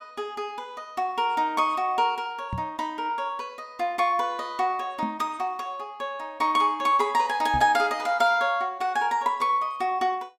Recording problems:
microphone thump; at 2.5 s, at 5 s and at 7.5 s; peak -3 dB vs average level

